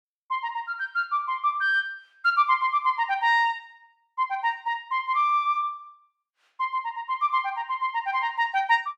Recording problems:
none

